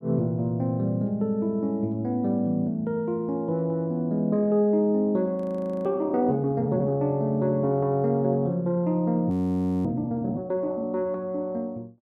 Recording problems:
audio freezing; at 5.5 s and at 9.5 s for 0.5 s

